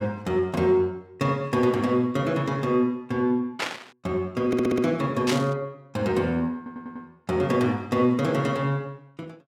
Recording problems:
static burst; at 3.5 s and at 5.5 s; peak +2 dB vs average level
audio stuttering; at 4.5 s and at 6.5 s

